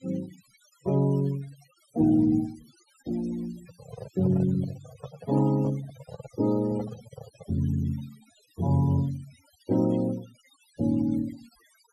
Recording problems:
noise reduction artefacts; signal-to-artefact ratio 21 dB
microphone handling noise; from 3.5 to 7.5 s; peak -8 dB vs average level

